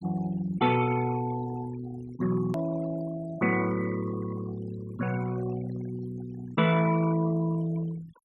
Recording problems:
noise reduction artefacts; signal-to-artefact ratio 15 dB
edit click; at 2.5 s

